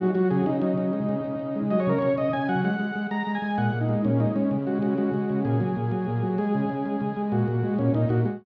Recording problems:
none

